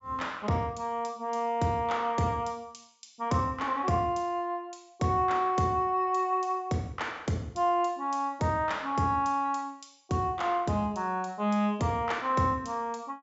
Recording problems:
treble missing; nothing above 8 kHz

